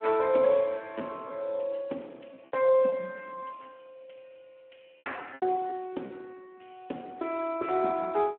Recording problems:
telephone audio; 220 Hz to 3.5 kHz, Speex
lost packets; 6% of the sound replaced, filled with repeated pitch periods

